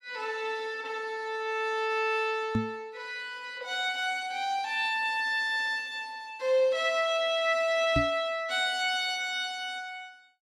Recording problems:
knock on the microphone; at 2.5 s and at 8 s; peak +4 dB vs average level

